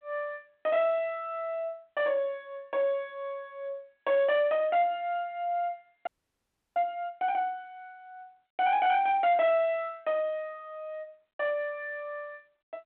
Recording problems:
telephone audio; 220 Hz to 3.6 kHz, G.726
distortion; soft clipping, signal-to-distortion ratio 11 dB
audio freezing; at 6 s for 0.5 s

